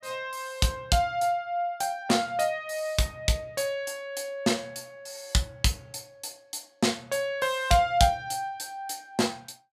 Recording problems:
none

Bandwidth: 14.5 kHz